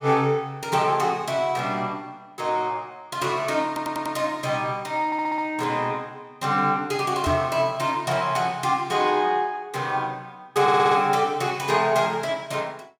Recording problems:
audio stuttering; at 3.5 s, at 5 s and at 11 s
microphone thump; at 7.5 s; peak 0 dB vs average level

